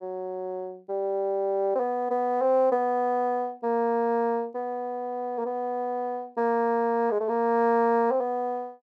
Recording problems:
none

